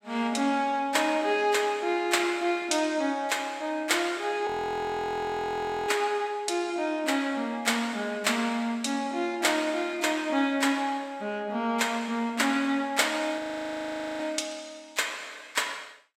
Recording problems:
audio freezing; at 4.5 s for 1.5 s and at 13 s for 1 s

